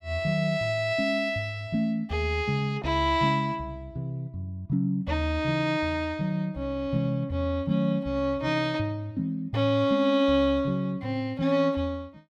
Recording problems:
none

